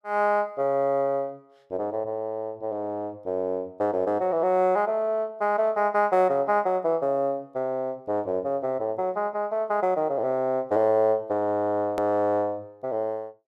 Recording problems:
click at an edit; at 12 s

